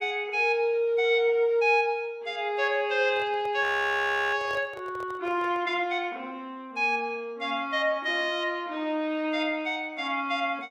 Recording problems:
handling noise; from 3 to 5.5 s; peak -11 dB vs average level
frozen audio; at 3.5 s for 0.5 s

